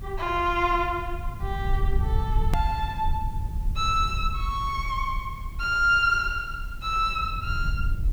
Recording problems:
hiss; slope -4 dB per octave, SNR 26 dB
rumble; below 76 Hz, SNR 6 dB
hard cut with a click; at 2.5 s

